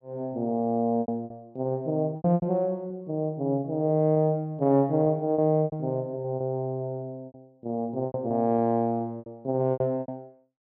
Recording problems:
lost packets; 11% of the sound replaced, filled with repeated pitch periods

